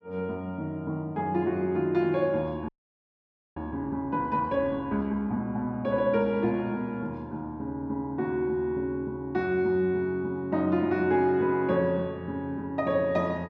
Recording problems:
frozen audio; at 2.5 s for 1 s

